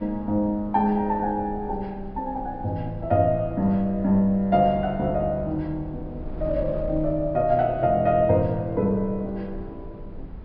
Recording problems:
treble cut off; nothing above 5.1 kHz
wind on the microphone; below 150 Hz, SNR 16 dB

